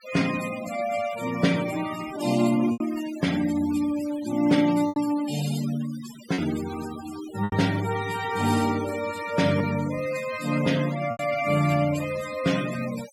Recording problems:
noise reduction artefacts; signal-to-artefact ratio 14 dB
packet loss; 3% of the sound replaced, filled with repeated pitch periods

